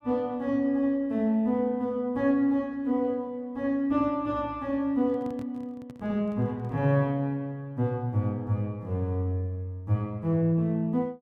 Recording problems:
handling noise; from 5 to 7 s; peak -12 dB vs average level

